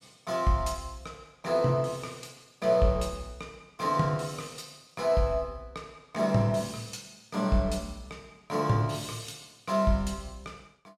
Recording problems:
none

